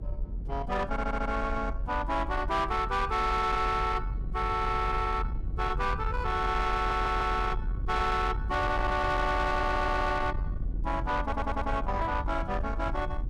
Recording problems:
distortion; soft clipping, signal-to-distortion ratio 11 dB
rumble; below 94 Hz, SNR 6 dB
stutter; 4 times, first at 1 s

